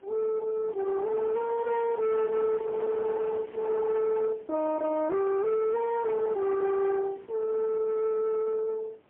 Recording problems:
phone line; 970 Hz to 2.3 kHz, AMR-NB, then MP3
distortion; soft clipping, signal-to-distortion ratio 10 dB
wind noise; below 950 Hz, SNR 16 dB

